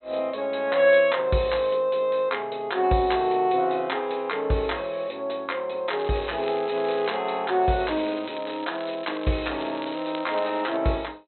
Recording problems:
treble missing; nothing above 4.1 kHz
crackling; from 6 to 7 s and from 8 to 11 s; loose cable, SNR 17 dB

